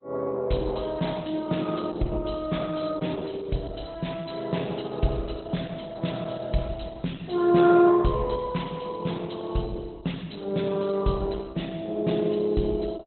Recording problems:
lossy codec; Opus, log-spectral distance 6 dB, nothing above 4.1 kHz

